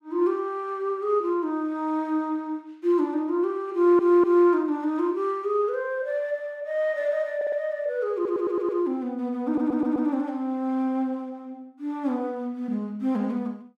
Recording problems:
audio stuttering; 4 times, first at 4 s

